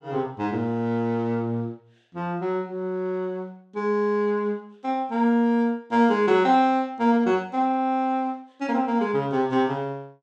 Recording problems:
none

